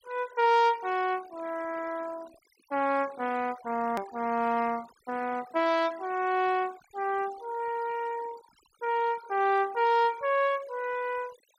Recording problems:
noise reduction artefacts; signal-to-artefact ratio 20 dB
edit click; at 4 s

